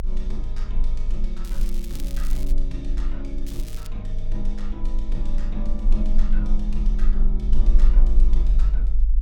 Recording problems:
low-frequency rumble; below 40 Hz, strongest tone 20 Hz, SNR -10 dB
crackling; from 1.5 to 2.5 s and at 3.5 s; loose cable, SNR 9 dB

